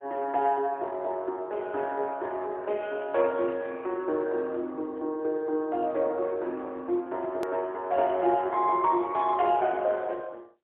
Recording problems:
telephone audio; 280 Hz to 3.8 kHz, AMR-NB, then MP3
click at an edit; at 7.5 s

